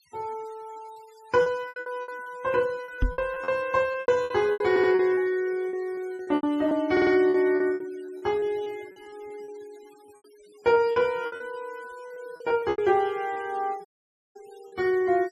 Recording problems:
denoising artefacts; signal-to-artefact ratio 27 dB
packet loss; 14% of the sound replaced, filled with repeated pitch periods
knock on the microphone; at 3 s; peak +3 dB vs average level
stutter; at 4.5 s and at 7 s
dropout; at 14 s for 0.5 s

